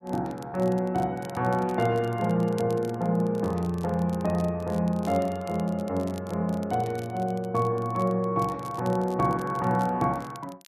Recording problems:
crackle; vinyl, SNR 24 dB

